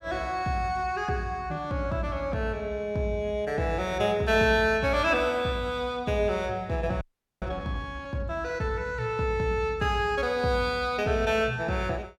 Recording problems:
frozen audio; at 7 s

